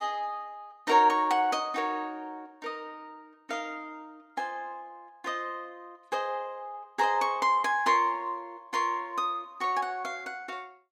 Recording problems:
none

